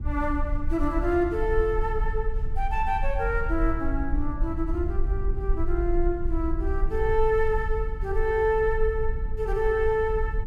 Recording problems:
rumble; below 52 Hz, strongest tone 20 Hz, SNR 4 dB

